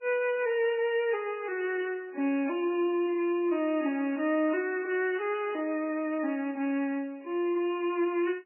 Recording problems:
lossy compression; MP3, log-spectral distance 2 dB, nothing above 2.5 kHz

